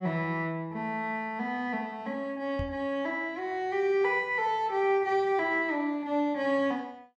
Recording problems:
microphone bump; at 2.5 s; peak -3 dB vs average level

